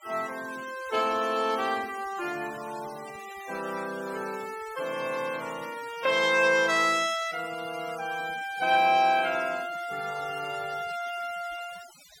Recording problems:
noise reduction artefacts; signal-to-artefact ratio 18 dB

